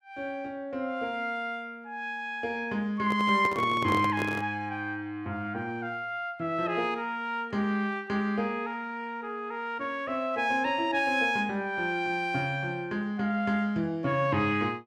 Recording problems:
handling noise; from 3 to 4.5 s; peak 0 dB vs average level

